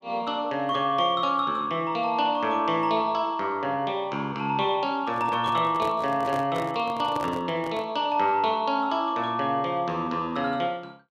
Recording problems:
handling noise; from 5 to 8 s; peak -5 dB vs average level

